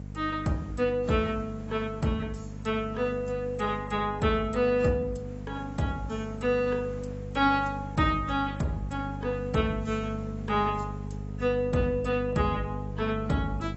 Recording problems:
lossy compression; AAC, log-spectral distance 3 dB, nothing above 7.8 kHz
hum; 50 Hz, harmonics up to 500 Hz, SNR 9 dB
background hiss; slope -6 dB per octave, SNR 24 dB

